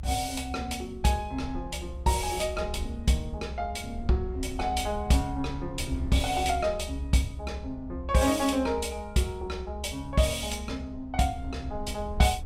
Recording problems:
rumble; below 76 Hz, strongest tone 66 Hz, SNR 10 dB

